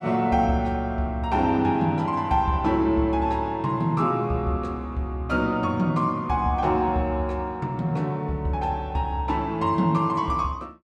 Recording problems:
none

